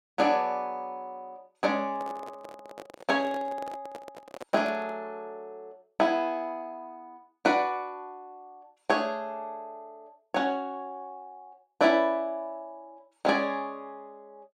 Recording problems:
handling noise; from 2 to 5 s; peak -6 dB vs average level

